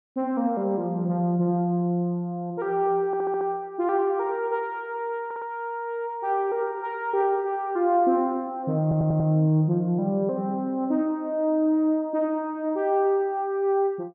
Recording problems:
audio stuttering; at 3 s, at 5.5 s and at 9 s

